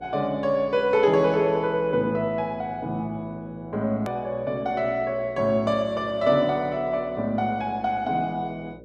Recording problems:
hum; 60 Hz, harmonics up to 600 Hz, SNR 22 dB
edit click; at 4 s

